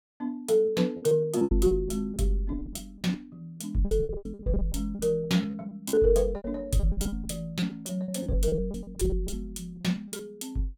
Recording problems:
packet loss; 15% of the sound replaced, filled with repeated pitch periods

